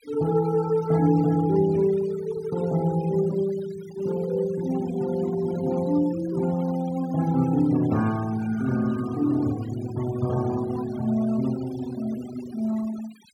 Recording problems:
denoising artefacts; signal-to-artefact ratio 18 dB

